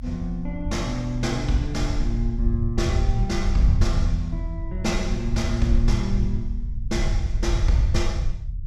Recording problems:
rumble; below 80 Hz, SNR 0 dB

